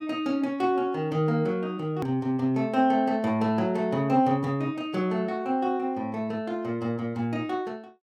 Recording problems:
click at an edit; at 2 s

